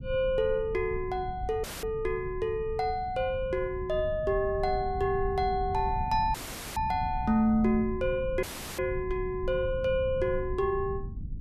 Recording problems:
low-frequency rumble; below 110 Hz, SNR 10 dB
dropout; at 1.5 s, at 6.5 s and at 8.5 s; filled with static

